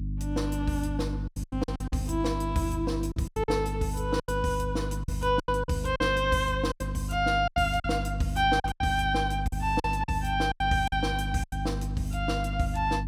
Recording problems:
hum; 50 Hz, harmonics up to 300 Hz, SNR 4 dB
lost packets; 11% of the sound replaced, filled with silence

